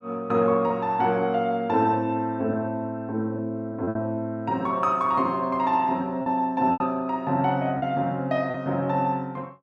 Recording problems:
lost packets; 3% of the sound replaced, filled with repeated pitch periods

